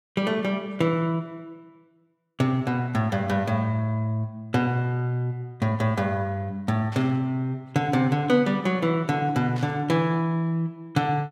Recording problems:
static burst; at 7 s and at 9.5 s; peak -13 dB vs average level

